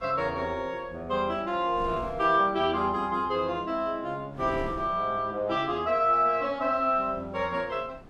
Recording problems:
wind on the microphone; below 530 Hz, SNR 20 dB

